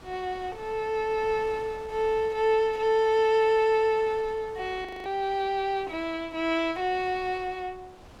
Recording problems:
wind on the microphone; below 1.1 kHz, SNR 22 dB
frozen audio; at 5 s

